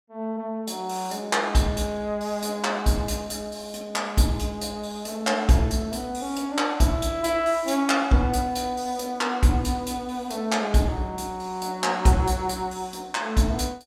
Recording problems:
none

